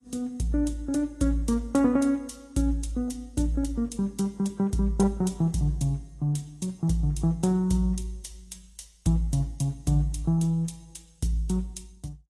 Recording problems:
lossy codec; AAC, log-spectral distance 2 dB

